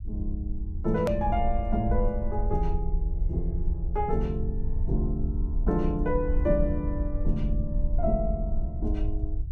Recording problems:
low-frequency rumble; below 62 Hz, SNR 1 dB
edit click; at 1 s

